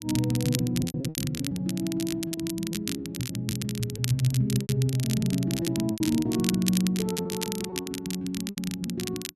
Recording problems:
crackling; vinyl, SNR 7 dB
packet loss; 15% of the sound replaced, filled with repeated pitch periods

